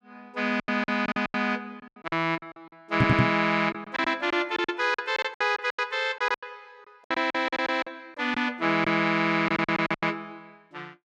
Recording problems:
lost packets; 16% of the sound replaced, filled with silence
stutter; at 3 s
microphone bump; at 3 s; peak +7 dB vs average level

